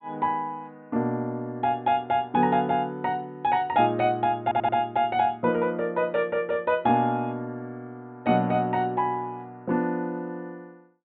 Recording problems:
treble cut off; nothing above 4 kHz
audio stuttering; at 4.5 s

